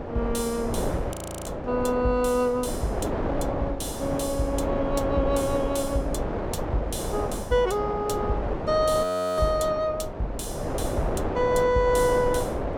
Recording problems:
wind noise; below 660 Hz, SNR 4 dB
audio freezing; at 1 s and at 9 s

